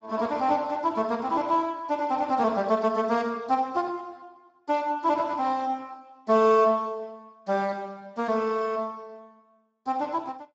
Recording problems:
lossy compression; Speex, log-spectral distance 3 dB

